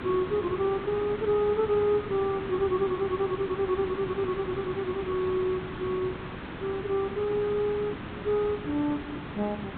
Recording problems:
treble missing; nothing above 4 kHz
background hiss; SNR 9 dB

